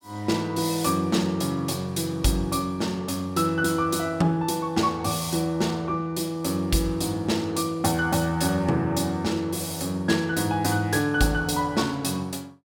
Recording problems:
none

